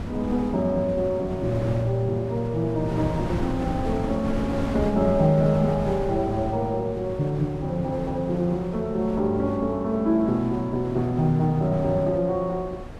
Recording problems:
wind on the microphone; below 400 Hz, SNR 10 dB

